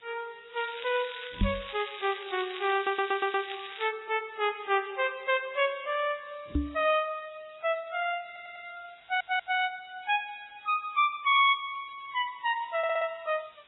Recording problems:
lossy codec; Vorbis, then AAC, log-spectral distance 14 dB, nothing above 3.4 kHz
background hiss; SNR 28 dB
crackle; from 0.5 to 4 s; loose cable, SNR 13 dB
microphone thump; at 1.5 s and at 6.5 s; peak +5 dB vs average level
audio stuttering; 4 times, first at 3 s

